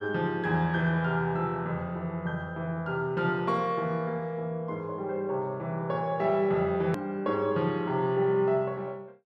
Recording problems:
click at an edit; at 7 s

